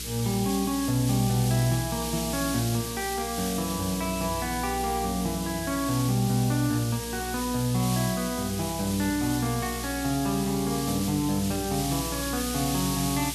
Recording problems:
electrical hum; 60 Hz, harmonics up to 480 Hz, SNR 13 dB
background hiss; slope +6 dB per octave, SNR 6 dB
crackling; from 1 to 2.5 s; loose cable, SNR 18 dB

